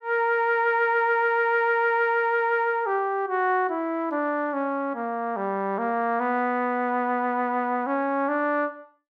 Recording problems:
none

